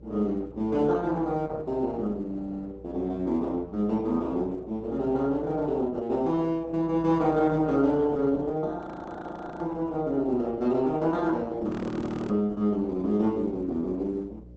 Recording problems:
lossy compression; Opus, log-spectral distance 2 dB, nothing above 8 kHz
electrical hum; 60 Hz, harmonics up to 600 Hz, SNR 22 dB
frozen audio; at 9 s for 1 s and at 12 s for 0.5 s

